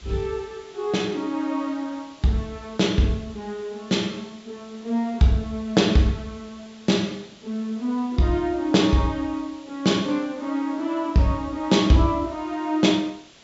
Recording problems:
treble missing; nothing above 8 kHz
background hiss; SNR 25 dB

